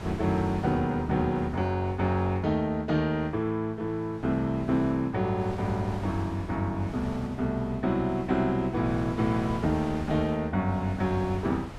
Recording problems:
wind on the microphone; below 710 Hz, SNR 15 dB

